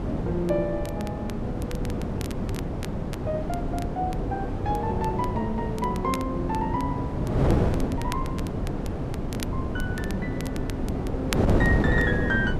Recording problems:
wind noise; below 370 Hz, SNR -2 dB
crackling; vinyl, SNR 13 dB

